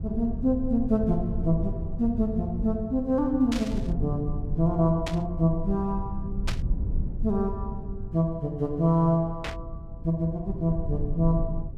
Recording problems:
low-frequency rumble; below 94 Hz, SNR 8 dB
static burst; 4 times, first at 3.5 s; peak -2 dB vs average level

